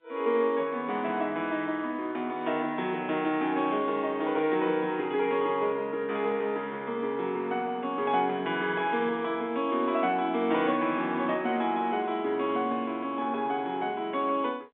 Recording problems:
phone line; 220 Hz to 3.7 kHz, G.711

